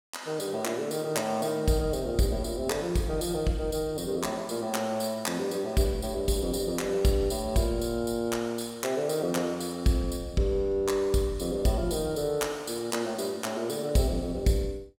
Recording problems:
none

